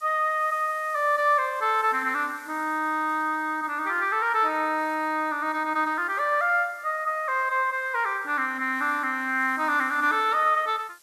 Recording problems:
background hiss; slope +1 dB per octave, SNR 27 dB

